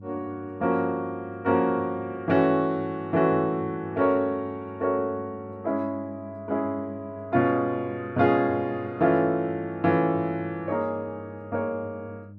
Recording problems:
mains hum; 50 Hz, harmonics up to 400 Hz, SNR 19 dB

